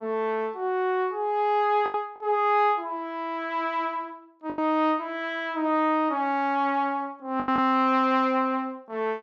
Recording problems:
lost packets; 3% of the sound replaced, filled with the last packet

